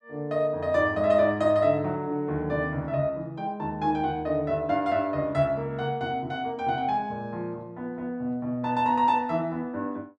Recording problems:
none

